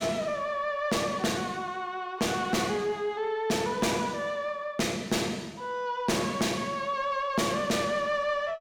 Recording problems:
distorted audio; soft clipping, signal-to-distortion ratio 6 dB

